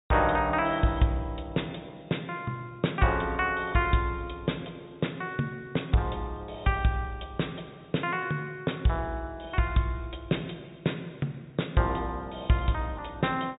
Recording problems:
treble cut off; nothing above 4 kHz

